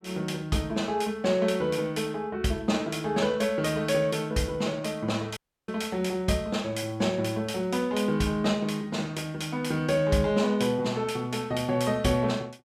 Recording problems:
audio cutting out; at 5.5 s

